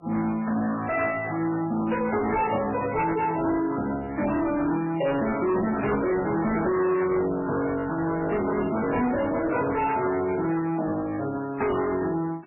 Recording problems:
lossy codec; MP3, then MP3, log-spectral distance 4 dB, nothing above 2.8 kHz
distortion; soft clipping, signal-to-distortion ratio 7 dB

